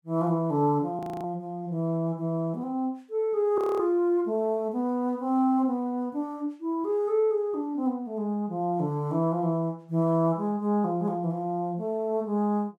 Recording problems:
frozen audio; at 1 s and at 3.5 s

